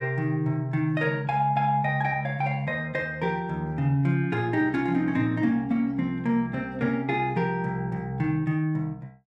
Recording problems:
none

